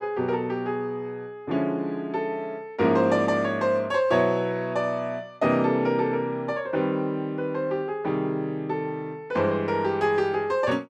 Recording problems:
none

